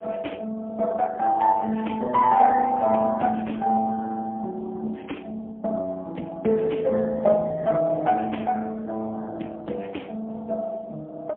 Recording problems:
phone line; 260 Hz to 3.3 kHz, AMR-NB, then MP3

